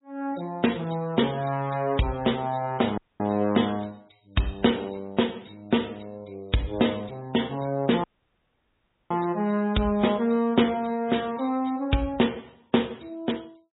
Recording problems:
treble cut off; nothing above 3.8 kHz
lossy compression; MP3, log-spectral distance 7 dB
audio cutting out; at 3 s and at 8 s for 1 s

